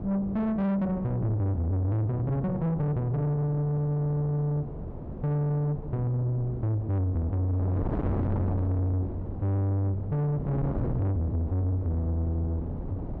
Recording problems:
distortion; soft clipping, signal-to-distortion ratio 7 dB
wind on the microphone; below 330 Hz, SNR 8 dB

